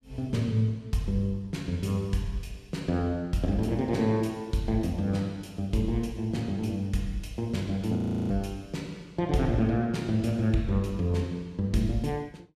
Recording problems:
audio freezing; at 8 s

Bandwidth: 14.5 kHz